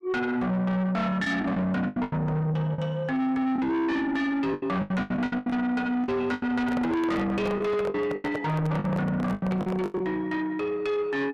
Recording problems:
distorted audio; soft clipping, signal-to-distortion ratio 7 dB
lost packets; 11% of the sound replaced, filled with the last packet
microphone handling noise; from 6.5 to 10 s; peak 0 dB vs average level

